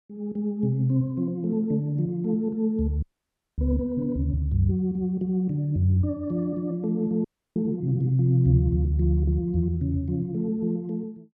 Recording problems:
audio freezing; at 3 s for 0.5 s and at 7 s

